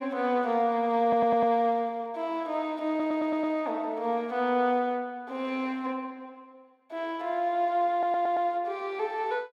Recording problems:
audio stuttering; at 1 s, at 3 s and at 8 s

